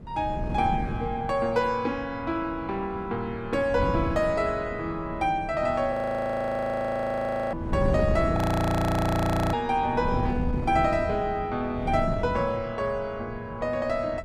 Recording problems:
wind on the microphone; below 240 Hz, SNR 6 dB
audio freezing; at 6 s for 1.5 s and at 8.5 s for 1 s

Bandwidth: 14.5 kHz